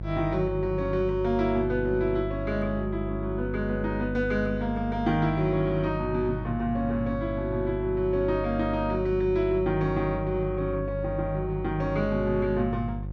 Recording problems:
hum; 50 Hz, harmonics up to 550 Hz, SNR 7 dB

